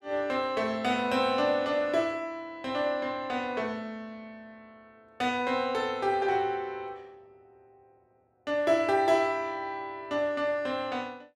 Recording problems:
none

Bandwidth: 14.5 kHz